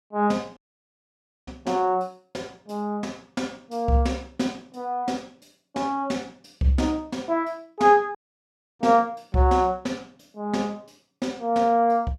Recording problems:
dropout; at 0.5 s for 1 s and at 8 s for 0.5 s

